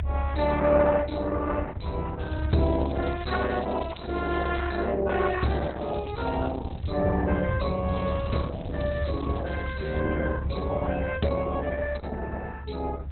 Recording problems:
lossy compression; Opus, log-spectral distance 5 dB, nothing above 4.1 kHz
rumble; below 90 Hz, strongest tone 70 Hz, SNR 2 dB
crackling; from 2 to 4.5 s, from 5.5 to 7 s and from 8 to 10 s; loose cable, SNR 23 dB

